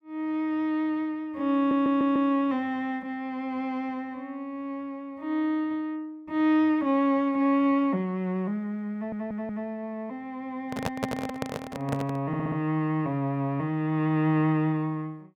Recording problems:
audio stuttering; at 1.5 s, at 9 s and at 12 s
handling noise; from 11 to 12 s; peak +2 dB vs average level

